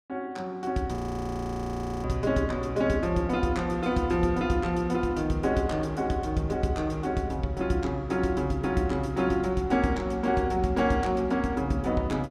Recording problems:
audio freezing; at 1 s for 1 s

